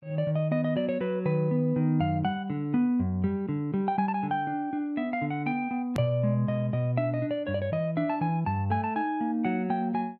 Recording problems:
click at an edit; at 6 s

